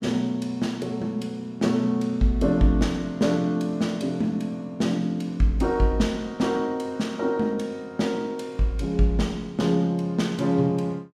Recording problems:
none

